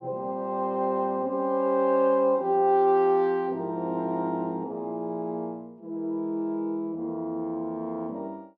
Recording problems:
none

